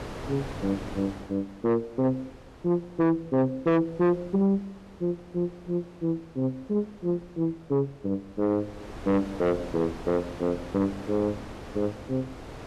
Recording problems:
distortion; soft clipping, signal-to-distortion ratio 8 dB
wind noise; below 940 Hz, SNR 15 dB

